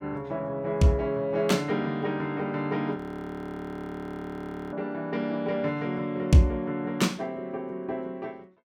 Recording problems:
frozen audio; at 3 s for 2 s

